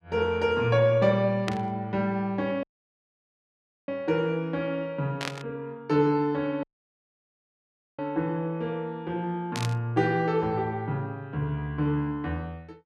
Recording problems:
static burst; at 1.5 s, at 5 s and at 9.5 s; peak -1 dB vs average level
audio cutting out; at 2.5 s for 1.5 s and at 6.5 s for 1.5 s

